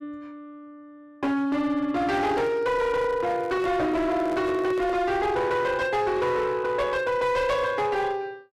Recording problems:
distortion; hard clipping, signal-to-distortion ratio 10 dB
handling noise; from 2 to 5 s; peak -9 dB vs average level

